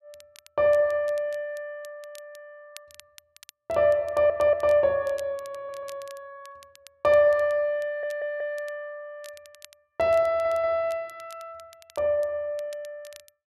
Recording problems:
crackle; vinyl, SNR 27 dB
stutter; 4 times, first at 4 s

